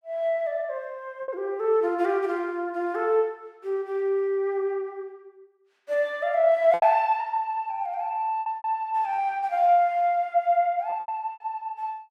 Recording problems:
lost packets; 4% of the sound replaced, filled with repeated pitch periods

